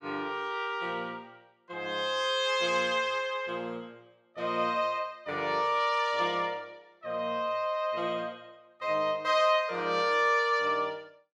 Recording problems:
none

